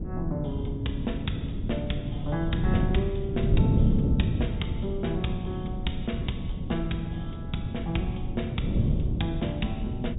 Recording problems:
treble missing; nothing above 4 kHz
low-frequency rumble; below 58 Hz, SNR 10 dB
wind noise; below 200 Hz, SNR -3 dB

